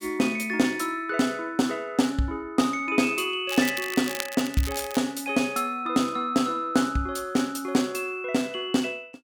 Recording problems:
crackle; from 3.5 to 5 s; loose cable, SNR 9 dB

